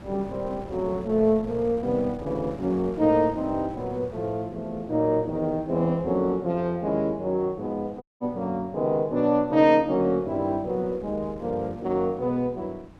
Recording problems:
wind on the microphone; below 470 Hz, SNR 20 dB
audio cutting out; at 8 s

